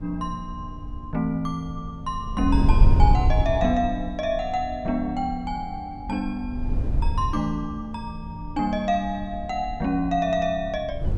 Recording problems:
wind noise; below 82 Hz, SNR 2 dB

